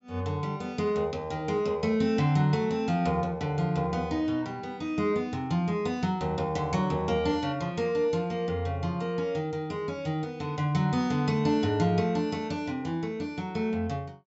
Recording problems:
treble missing; nothing above 8 kHz

